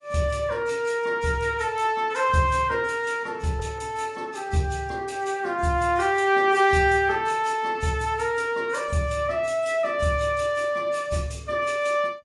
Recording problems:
lossy compression; AAC, log-spectral distance 2 dB

